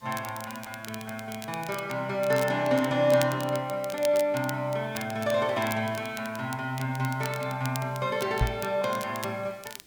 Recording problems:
background hiss; SNR 28 dB
crackle; vinyl, SNR 14 dB
knock on the microphone; at 8.5 s; peak +6 dB vs average level

